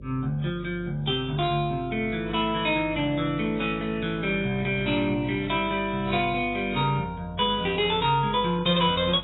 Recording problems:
codec artefacts; AAC, log-spectral distance 2 dB, nothing above 3.9 kHz
electrical hum; 50 Hz, harmonics up to 600 Hz, SNR 18 dB

